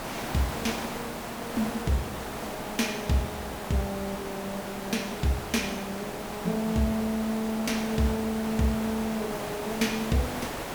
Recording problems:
background hiss; slope -5 dB per octave, SNR 5 dB

